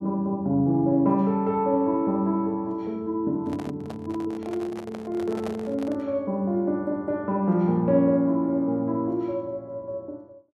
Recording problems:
handling noise; from 3.5 to 6 s; peak -6 dB vs average level

